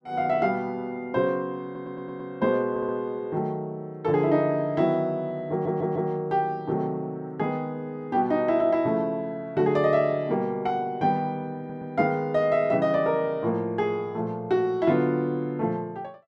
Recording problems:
audio stuttering; 4 times, first at 1.5 s

